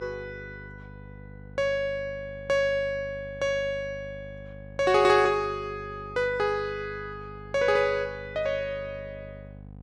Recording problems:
hum; 50 Hz, harmonics up to 800 Hz, SNR 18 dB

